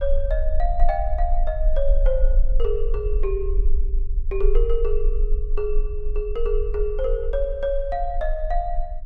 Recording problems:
rumble; below 36 Hz, strongest tone 20 Hz, SNR -1 dB

